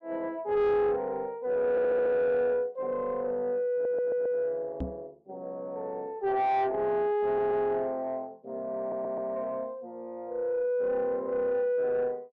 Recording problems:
distorted audio; soft clipping, signal-to-distortion ratio 11 dB
audio stuttering; 4 times, first at 1.5 s
microphone thump; at 5 s; peak -1 dB vs average level

